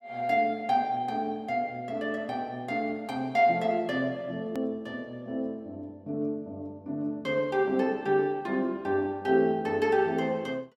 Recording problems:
click at an edit; at 4.5 s

